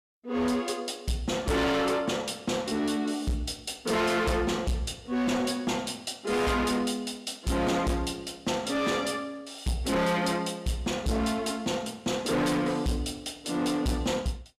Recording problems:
distorted audio; hard clipping, signal-to-distortion ratio 8 dB

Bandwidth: 14.5 kHz